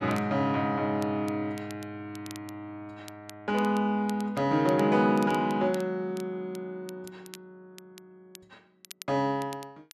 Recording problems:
crackling; vinyl, SNR 22 dB

